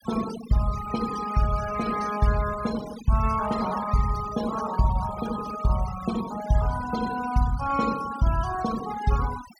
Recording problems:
denoising artefacts; signal-to-artefact ratio 12 dB

